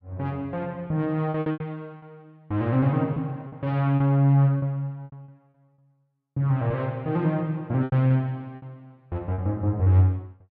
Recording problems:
lost packets; 8% of the sound replaced, filled with repeated pitch periods

